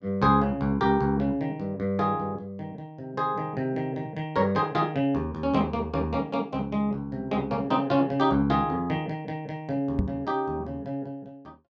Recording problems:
microphone thump; at 10 s; peak +4 dB vs average level

